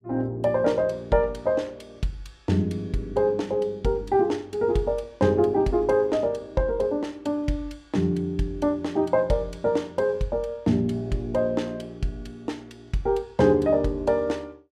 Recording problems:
none

